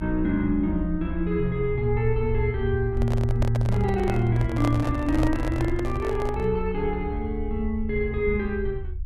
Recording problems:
low-frequency rumble; below 74 Hz, SNR 7 dB
microphone handling noise; from 3 to 6.5 s; peak -1 dB vs average level

